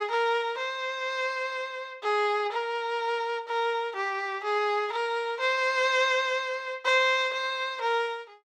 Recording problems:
none

